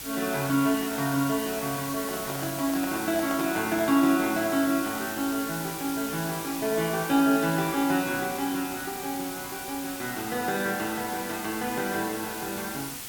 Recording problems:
hiss; slope 0 dB per octave, SNR 8 dB
microphone handling noise; from 2 to 4 s; peak -7 dB vs average level

